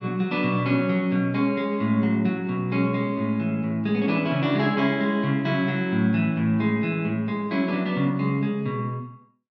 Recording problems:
none

